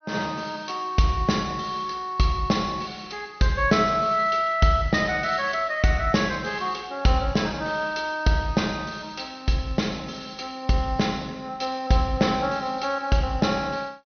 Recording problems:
treble missing; nothing above 6.2 kHz

